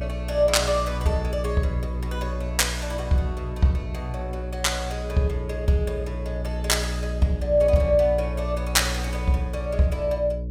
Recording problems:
hum; 60 Hz, harmonics up to 540 Hz, SNR 6 dB

